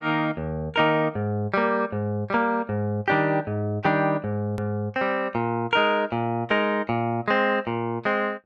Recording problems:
click at an edit; at 4.5 s

